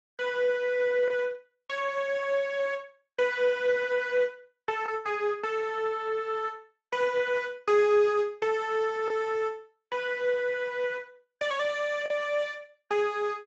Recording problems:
codec artefacts; Speex, log-spectral distance 3 dB, nothing above 7.6 kHz
packet loss; 0.9% of the sound replaced, filled with the last packet

